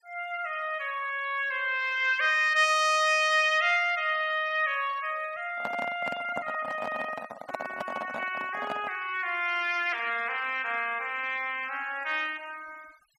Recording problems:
noise reduction artefacts; signal-to-artefact ratio 22 dB
handling noise; from 5.5 to 9 s; peak -2 dB vs average level

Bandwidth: 15.5 kHz